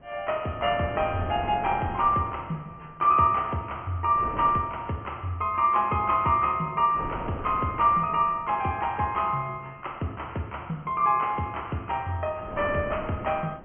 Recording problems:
treble cut off; nothing above 3.2 kHz
wind on the microphone; below 680 Hz, SNR 13 dB

